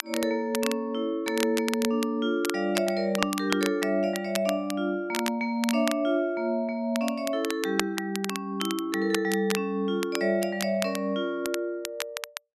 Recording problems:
crackle; vinyl, SNR 8 dB

